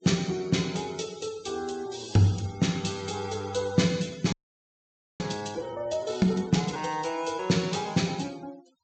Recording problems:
low-pass filter; nothing above 8 kHz
denoising artefacts; signal-to-artefact ratio 21 dB
audio freezing; at 4.5 s for 1 s

